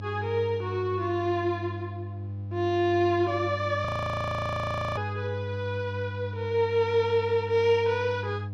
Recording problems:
hum; 50 Hz, harmonics up to 500 Hz, SNR 8 dB
frozen audio; at 4 s for 1 s

